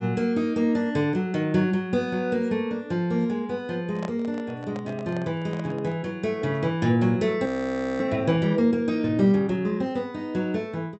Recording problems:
treble cut off; nothing above 7.9 kHz
handling noise; from 4 to 6 s; peak -6 dB vs average level
frozen audio; at 7.5 s for 0.5 s

